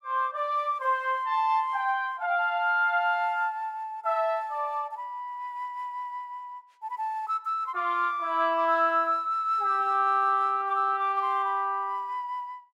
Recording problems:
none

